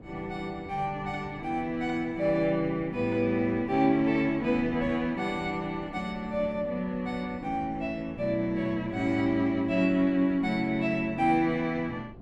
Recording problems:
wind noise; below 330 Hz, SNR 19 dB

